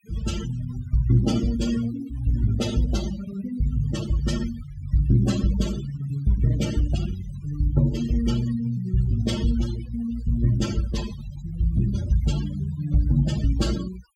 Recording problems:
noise reduction artefacts; signal-to-artefact ratio 13 dB

